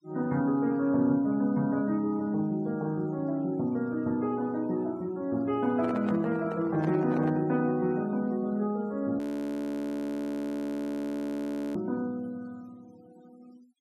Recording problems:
noise reduction artefacts; signal-to-artefact ratio 27 dB
microphone handling noise; from 5.5 to 7.5 s; peak -5 dB vs average level
frozen audio; at 9 s for 2.5 s

